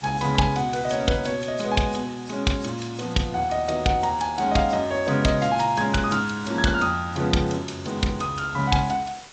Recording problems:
codec artefacts; G.722, then AAC, log-spectral distance 7 dB, nothing above 7.6 kHz
hiss; slope -1 dB per octave, SNR 22 dB

